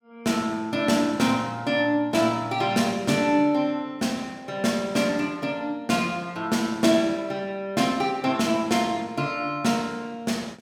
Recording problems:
none

